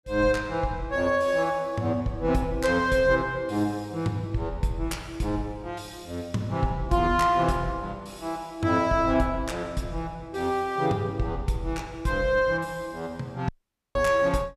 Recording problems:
audio cutting out; at 13 s

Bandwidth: 14.5 kHz